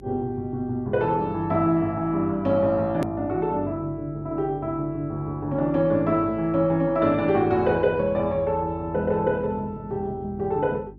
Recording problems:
hum; 50 Hz, harmonics up to 400 Hz, SNR 21 dB
click at an edit; at 3 s

